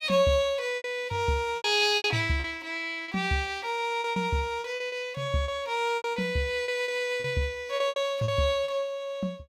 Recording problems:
packet loss; 11% of the sound replaced, filled with repeated pitch periods

